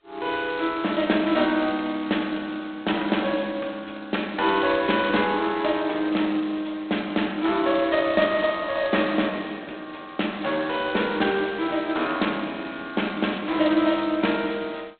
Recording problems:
telephone audio; 240 Hz to 3.9 kHz, G.726

